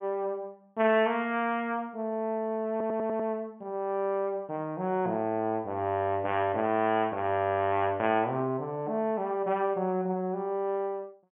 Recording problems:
low-pass filter; nothing above 3.4 kHz
stutter; at 2.5 s

